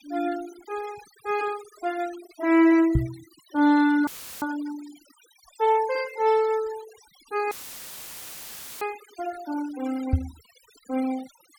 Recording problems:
denoising artefacts; signal-to-artefact ratio 19 dB
microphone bump; at 3 s and at 10 s; peak +7 dB vs average level
audio cutting out; at 4 s and at 7.5 s for 1.5 s; filled with static

